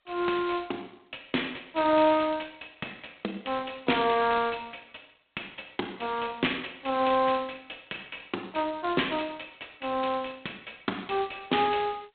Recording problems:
phone line; 220 Hz to 3.9 kHz, G.726

